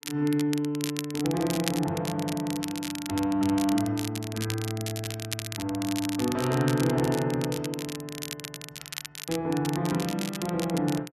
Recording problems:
crackle; vinyl, SNR 9 dB

